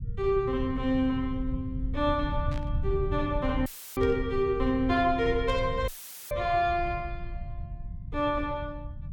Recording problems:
low-frequency rumble; below 110 Hz, SNR 7 dB
burst of static; at 2.5 s, at 4 s and at 5.5 s; peak -13 dB vs average level
dropout; at 3.5 s and at 6 s; filled with static

